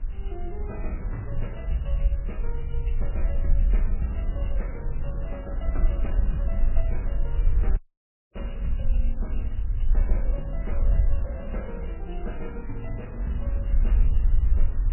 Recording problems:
lossy codec; MP3, log-spectral distance 2 dB, nothing above 2.9 kHz
hiss; SNR 23 dB
low-frequency rumble; below 50 Hz, SNR -9 dB
wind on the microphone; below 370 Hz, SNR 7 dB
dropout; at 8 s for 0.5 s

